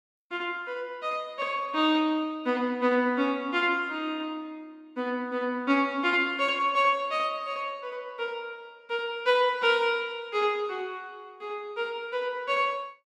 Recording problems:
none

